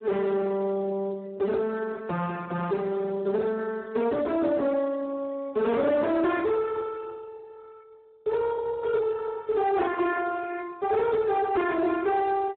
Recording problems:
telephone audio; 170 Hz to 3.3 kHz, Speex
distortion; soft clipping, signal-to-distortion ratio 11 dB

